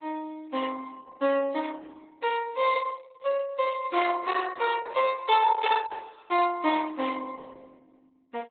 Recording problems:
lossy compression; MP3, then Opus, log-spectral distance 4 dB, nothing above 3.8 kHz

